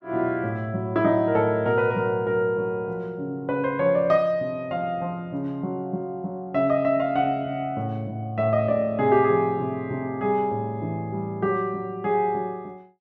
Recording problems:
none

